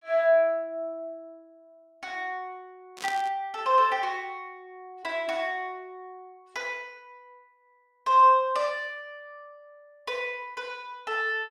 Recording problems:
burst of static; at 3 s; peak -6 dB vs average level

